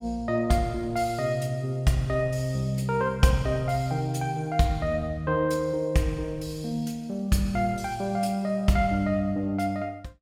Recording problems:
none

